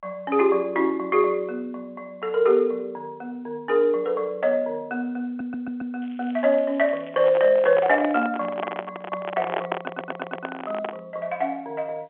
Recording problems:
telephone audio; 300 Hz to 4 kHz, G.711
stutter; at 5.5 s and at 10 s
crackle; from 6 to 8 s; loose cable, SNR 27 dB
microphone handling noise; from 7 to 11 s; peak +1 dB vs average level

